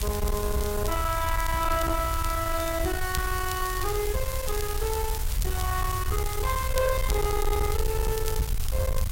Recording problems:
distortion; soft clipping, signal-to-distortion ratio 9 dB
hiss; slope -2 dB per octave, SNR 7 dB
rumble; below 82 Hz, SNR 3 dB
crackle; vinyl, SNR 15 dB

